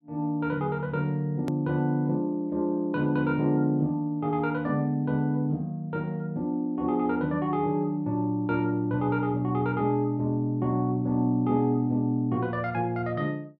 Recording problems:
click at an edit; at 1.5 s

